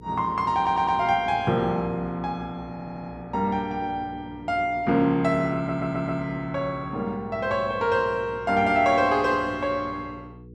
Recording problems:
hum; 60 Hz, harmonics up to 480 Hz, SNR 20 dB
stutter; at 0.5 s, at 2.5 s and at 5.5 s

